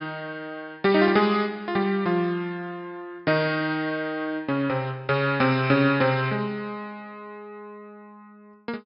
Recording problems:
treble missing; nothing above 5.5 kHz

